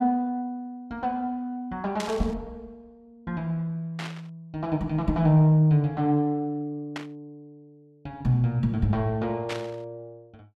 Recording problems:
static burst; 4 times, first at 2 s; peak -4 dB vs average level

